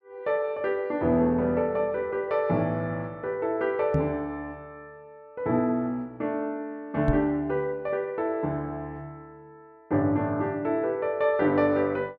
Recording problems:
microphone bump; at 4 s and at 7 s; peak +4 dB vs average level

